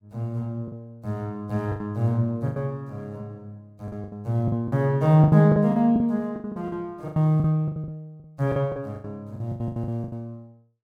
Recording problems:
lost packets; 15% of the sound replaced, filled with the last packet

